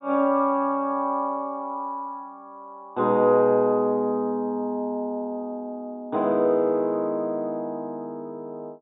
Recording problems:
treble cut off; nothing above 3.7 kHz

